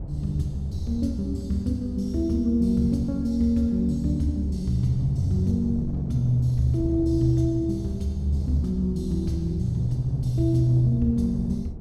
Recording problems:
wind on the microphone; below 180 Hz, SNR 13 dB

